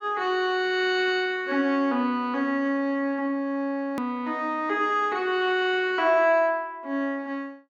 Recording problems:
hard cut with a click; at 4 s

